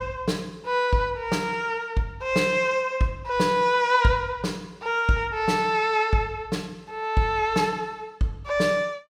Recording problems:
none

